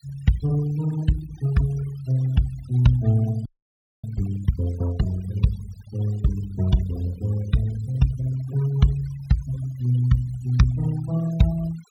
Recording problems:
noise reduction artefacts; signal-to-artefact ratio 19 dB
audio freezing; at 3.5 s for 0.5 s

